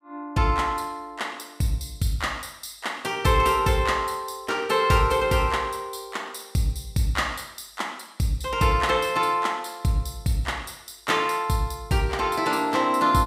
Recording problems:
none

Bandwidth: 15.5 kHz